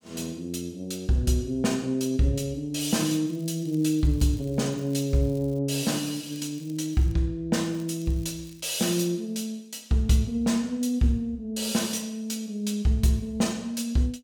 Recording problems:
crackling; from 3.5 to 5.5 s, from 6 to 7 s and from 7.5 to 8.5 s; loose cable, SNR 27 dB

